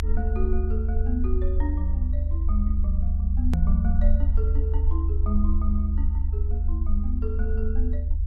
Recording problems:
rumble; below 74 Hz, SNR -8 dB
edit click; at 3.5 s

